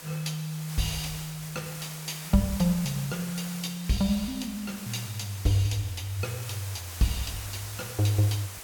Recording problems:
background hiss; slope -1 dB per octave, SNR 10 dB

